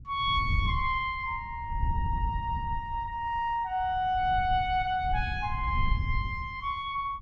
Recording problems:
wind on the microphone; below 98 Hz, SNR 5 dB

